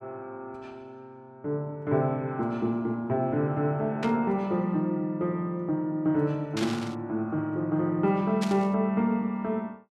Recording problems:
burst of static; at 4 s, at 6.5 s and at 8.5 s; peak -3 dB vs average level

